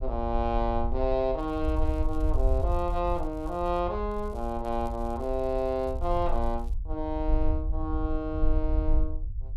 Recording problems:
rumble; below 60 Hz, SNR 2 dB
crackling; from 1.5 to 4 s and from 4 to 6.5 s; loose cable, SNR 29 dB

